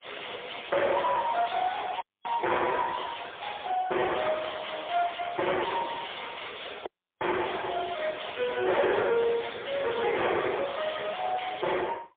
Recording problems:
phone line; 320 Hz to 3.5 kHz, AMR-NB, then MP3
distortion; soft clipping, signal-to-distortion ratio 6 dB
audio cutting out; at 2 s and at 7 s

